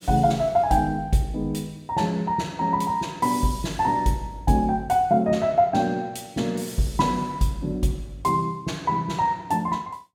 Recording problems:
none

